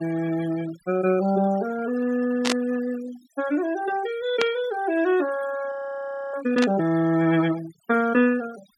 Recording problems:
denoising artefacts; signal-to-artefact ratio 17 dB
static burst; at 2.5 s, at 4.5 s and at 6.5 s; peak +4 dB vs average level
frozen audio; at 5.5 s for 0.5 s

